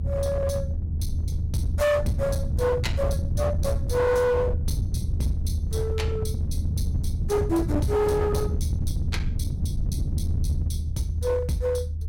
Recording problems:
distorted audio; hard clipping, uneven, signal-to-distortion ratio 10 dB
low-frequency rumble; below 120 Hz, SNR 1 dB

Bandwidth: 16.5 kHz